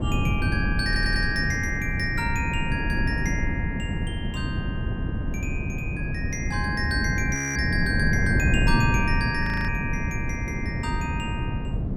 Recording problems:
wind on the microphone; below 200 Hz, SNR -1 dB
audio stuttering; at 1 s
frozen audio; at 7.5 s and at 9.5 s

